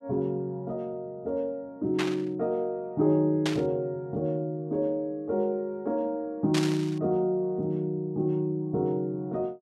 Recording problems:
static burst; at 2 s, at 3.5 s and at 6.5 s; peak +1 dB vs average level

